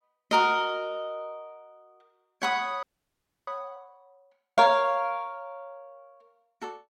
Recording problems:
audio freezing; at 3 s for 0.5 s

